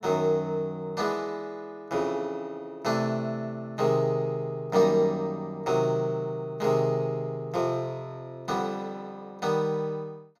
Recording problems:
none

